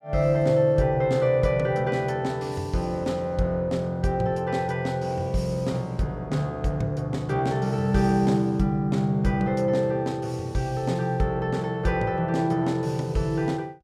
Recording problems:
none

